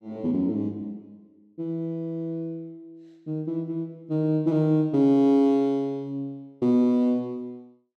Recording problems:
none

